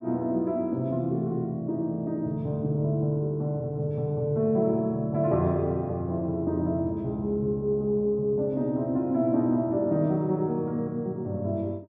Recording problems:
none

